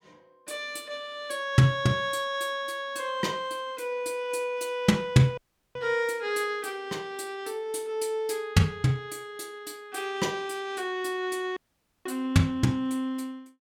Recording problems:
dropout; at 5.5 s and at 12 s

